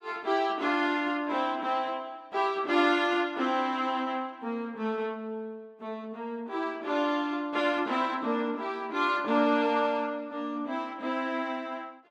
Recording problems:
none

